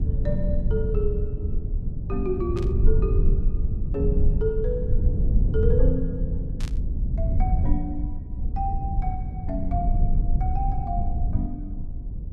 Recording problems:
low-frequency rumble; below 80 Hz, SNR -5 dB
static burst; at 2.5 s and at 6.5 s; peak -5 dB vs average level

